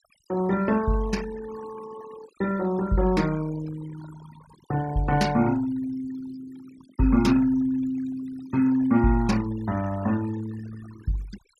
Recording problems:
denoising artefacts; signal-to-artefact ratio 17 dB

